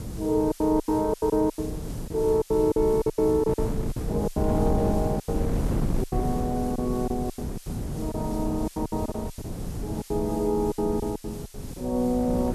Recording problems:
hiss; slope +3 dB per octave, SNR 20 dB
wind on the microphone; below 240 Hz, SNR 6 dB
lost packets; 15% of the sound replaced, filled with silence

